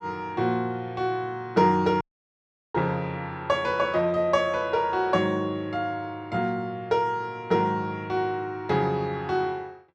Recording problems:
audio cutting out; at 2 s for 0.5 s

